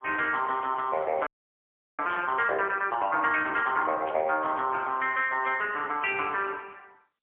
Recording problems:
phone line; 280 Hz to 3.1 kHz, AMR-NB, then MP3
audio freezing; at 1.5 s for 0.5 s
burst of static; at 2 s and at 4 s; peak -10 dB vs average level

